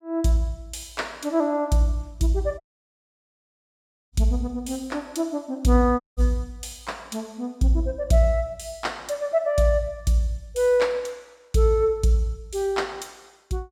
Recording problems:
dropout; at 2.5 s for 1.5 s and at 6 s

